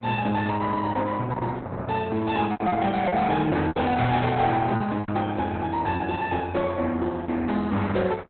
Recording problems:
codec artefacts; Opus, log-spectral distance 3 dB, nothing above 4 kHz
distortion; soft clipping, signal-to-distortion ratio 10 dB
packet loss; 6% of the sound replaced, filled with repeated pitch periods

